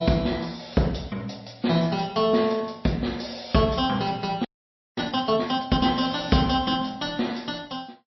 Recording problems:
lossy compression; MP3, log-spectral distance 5 dB, nothing above 5.7 kHz
frozen audio; at 4.5 s for 0.5 s

